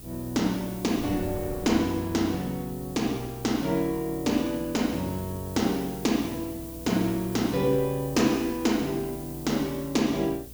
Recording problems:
hum; 60 Hz, harmonics up to 480 Hz, SNR 19 dB
hiss; SNR 16 dB
wind noise; below 340 Hz, SNR 20 dB

